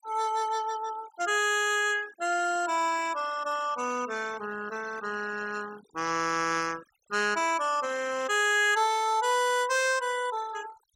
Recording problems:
noise reduction artefacts; signal-to-artefact ratio 16 dB

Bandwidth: 16.5 kHz